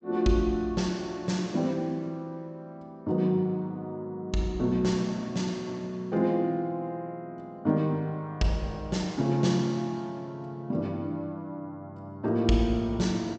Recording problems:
treble missing; nothing above 8 kHz

